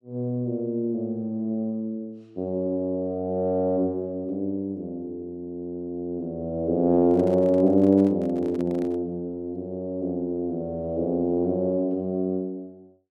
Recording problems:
handling noise; from 7 to 9 s; peak -9 dB vs average level

